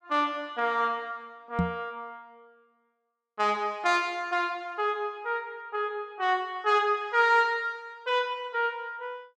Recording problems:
knock on the microphone; at 1.5 s; peak +4 dB vs average level

